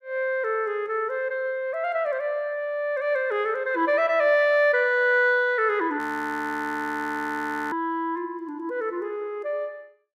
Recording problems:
frozen audio; at 6 s for 1.5 s

